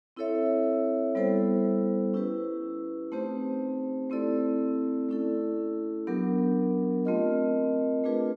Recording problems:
none

